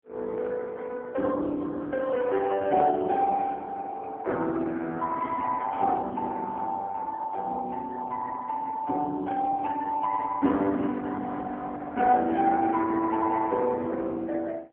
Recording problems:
telephone audio; 220 Hz to 3.2 kHz, AMR-NB

